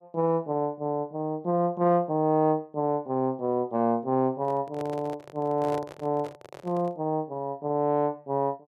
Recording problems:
microphone handling noise; from 4.5 to 7 s; peak -7 dB vs average level

